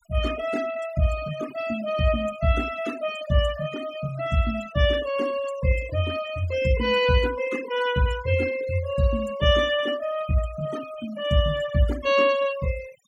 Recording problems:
denoising artefacts; signal-to-artefact ratio 16 dB

